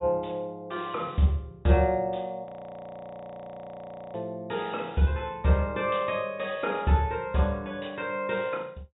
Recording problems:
treble missing; nothing above 4 kHz
audio freezing; at 2.5 s for 1.5 s

